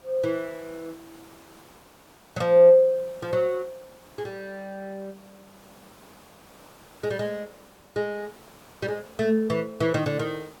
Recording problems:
hiss; slope -5 dB per octave, SNR 26 dB

